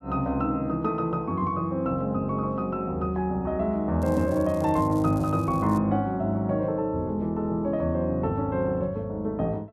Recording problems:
crackle; from 4 to 6 s; loose cable, SNR 25 dB

